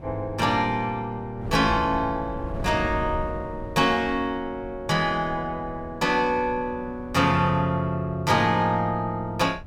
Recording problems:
wind on the microphone; below 170 Hz, SNR 14 dB

